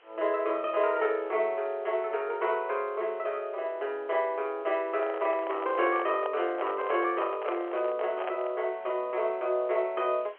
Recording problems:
telephone audio; 280 Hz to 3.3 kHz, G.711
hiss; SNR 28 dB
handling noise; from 5 to 8.5 s; peak -2 dB vs average level

